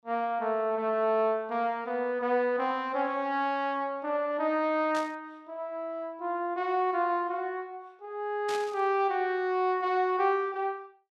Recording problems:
burst of static; at 5 s and at 8.5 s; peak -6 dB vs average level

